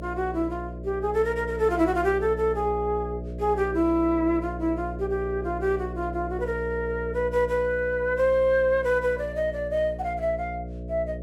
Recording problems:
hum; 60 Hz, harmonics up to 660 Hz, SNR 10 dB

